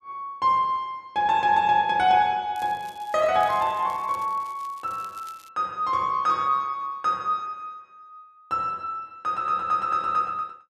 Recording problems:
crackle; from 2.5 to 5.5 s; loose cable, SNR 27 dB

